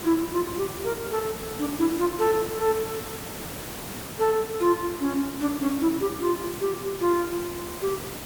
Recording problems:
hiss; slope -4 dB per octave, SNR 9 dB

